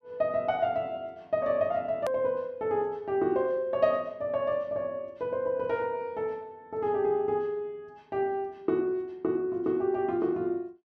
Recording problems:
edit click; at 2 s

